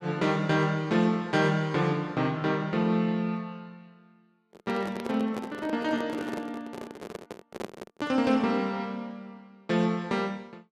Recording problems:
microphone handling noise; from 4.5 to 8.5 s; peak -4 dB vs average level

